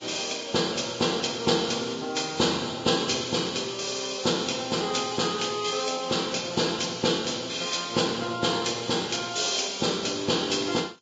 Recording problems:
codec artefacts; Vorbis, log-spectral distance 7 dB, nothing above 7.3 kHz

